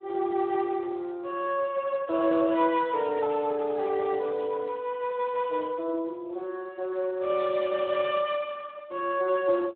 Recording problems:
phone line; 190 Hz to 3.5 kHz, Speex

